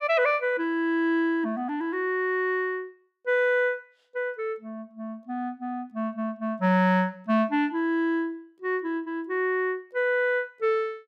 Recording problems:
none

